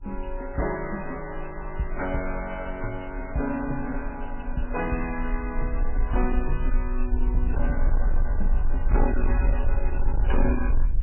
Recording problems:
codec artefacts; AAC, then MP3, log-spectral distance 2 dB, nothing above 2.5 kHz
distortion; hard clipping, signal-to-distortion ratio 11 dB
rumble; below 44 Hz, strongest tone 22 Hz, SNR -2 dB

